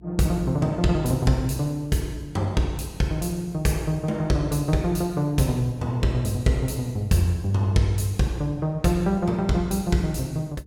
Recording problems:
mains hum; 60 Hz, harmonics up to 480 Hz, SNR 23 dB

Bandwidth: 17 kHz